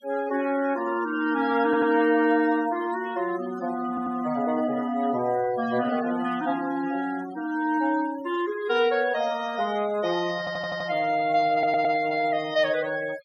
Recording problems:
denoising artefacts; signal-to-artefact ratio 17 dB
audio stuttering; 4 times, first at 1.5 s

